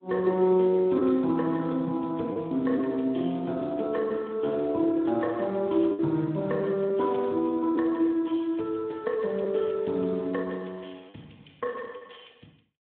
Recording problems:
telephone audio; 150 Hz to 3.9 kHz, Speex
packet loss; 2% of the sound replaced, filled with the last packet

